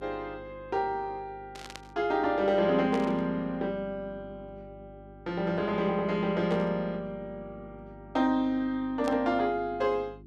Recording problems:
hum; 50 Hz, harmonics up to 400 Hz, SNR 22 dB
static burst; 4 times, first at 1.5 s; peak -8 dB vs average level

